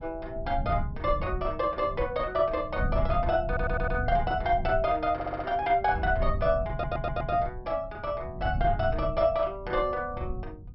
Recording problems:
low-pass filter; nothing above 5.5 kHz
low-frequency rumble; below 110 Hz, SNR 7 dB
audio stuttering; at 3.5 s, at 5 s and at 6.5 s

